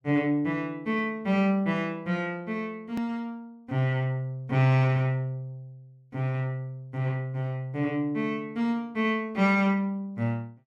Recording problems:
edit click; at 3 s

